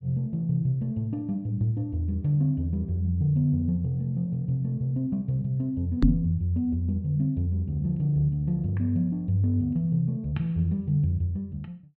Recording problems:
knock on the microphone; at 6 s; peak +9 dB vs average level

